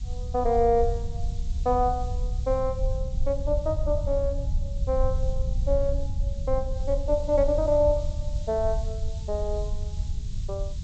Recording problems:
treble missing; nothing above 8 kHz
background hiss; SNR 24 dB
rumble; below 70 Hz, SNR 4 dB

